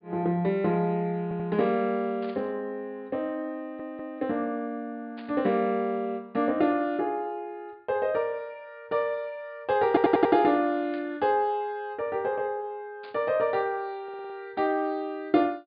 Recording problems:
treble cut off; nothing above 4.9 kHz
audio stuttering; 4 times, first at 1 s
static burst; 4 times, first at 2 s; peak -16 dB vs average level

